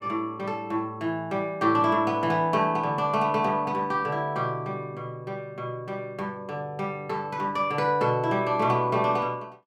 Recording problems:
none

